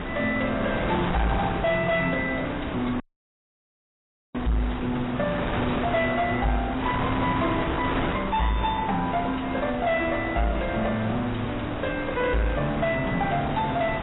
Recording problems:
codec artefacts; AAC, log-spectral distance 5 dB, nothing above 3.8 kHz
distorted audio; soft clipping, signal-to-distortion ratio 10 dB
wind noise; below 1.3 kHz, SNR 5 dB
dropout; at 3 s for 1.5 s

